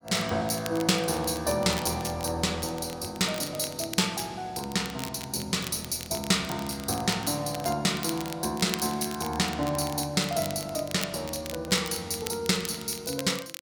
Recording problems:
crackling; vinyl, SNR 12 dB

